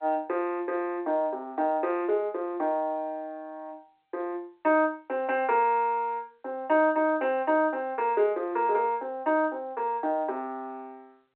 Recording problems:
phone line; 280 Hz to 3.2 kHz, G.711

